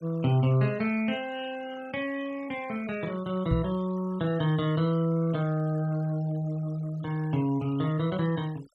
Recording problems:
noise reduction artefacts; signal-to-artefact ratio 22 dB
microphone bump; at 3.5 s; peak +5 dB vs average level

